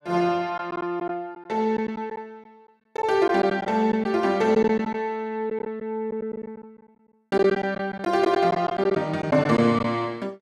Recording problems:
lost packets; 7% of the sound replaced, filled with silence

